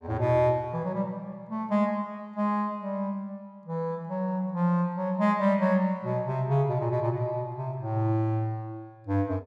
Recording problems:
none

